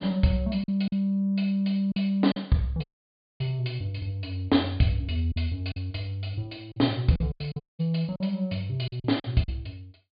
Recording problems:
treble missing; nothing above 4.8 kHz
packet loss; 8% of the sound replaced, filled with silence
dropout; at 3 s for 0.5 s and at 7.5 s

